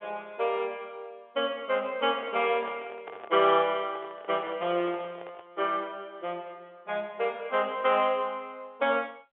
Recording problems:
telephone audio; 240 Hz to 3.5 kHz, G.711
microphone handling noise; from 2 to 5.5 s; peak -10 dB vs average level

